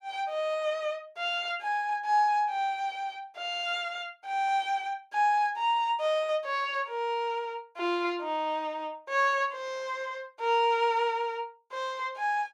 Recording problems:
none

